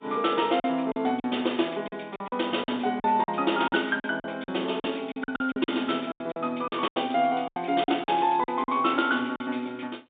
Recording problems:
telephone audio; 220 Hz to 3.7 kHz, G.711
lost packets; 13% of the sound replaced, filled with silence

